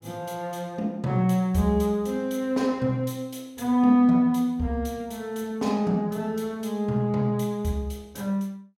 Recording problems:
none

